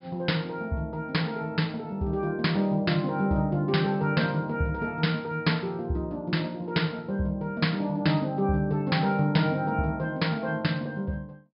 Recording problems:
treble missing; nothing above 5.5 kHz

